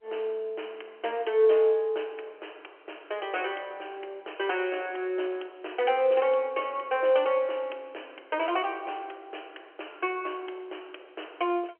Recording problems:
phone line; 300 Hz to 3.2 kHz, G.711

